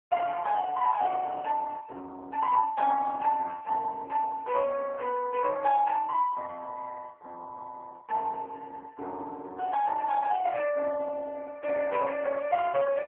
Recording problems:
telephone audio; 370 Hz to 3 kHz, AMR-NB

